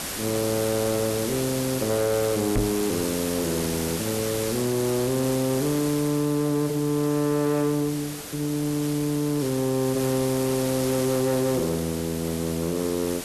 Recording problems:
distorted audio; soft clipping, signal-to-distortion ratio 11 dB
hiss; slope -2 dB per octave, SNR 6 dB
knock on the microphone; at 2.5 s; peak +4 dB vs average level

